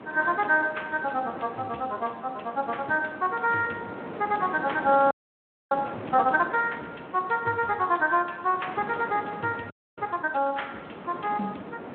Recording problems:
telephone audio; 170 Hz to 3.4 kHz, Speex
wind noise; below 930 Hz, SNR 13 dB
frozen audio; at 5 s for 0.5 s and at 9.5 s

